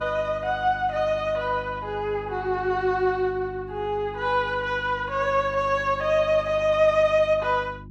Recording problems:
hum; 50 Hz, harmonics up to 350 Hz, SNR 18 dB

